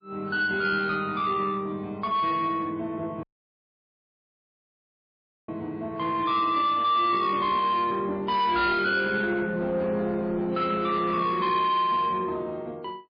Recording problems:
codec artefacts; MP3, log-spectral distance 2 dB, nothing above 4.5 kHz
distortion; soft clipping, signal-to-distortion ratio 12 dB
audio cutting out; at 3 s for 2.5 s

